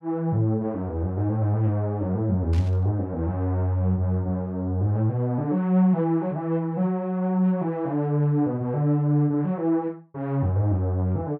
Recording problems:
static burst; at 2.5 s; peak -16 dB vs average level

